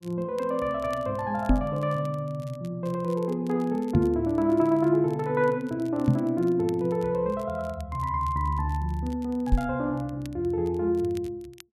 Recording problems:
crackling; vinyl, SNR 28 dB
microphone bump; 4 times, first at 1.5 s; peak +8 dB vs average level

